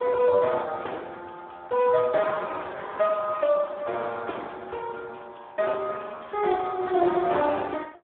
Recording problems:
phone line; 300 Hz to 3.6 kHz, Speex

